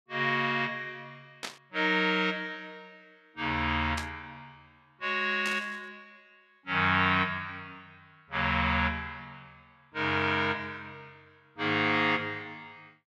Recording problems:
static burst; at 1.5 s, at 4 s and at 5.5 s; peak -3 dB vs average level

